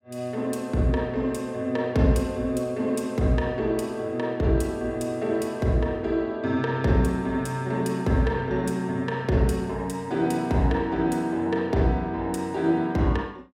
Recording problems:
none

